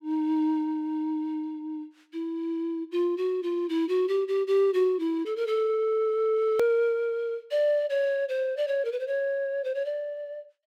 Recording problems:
hard cut with a click; at 6.5 s

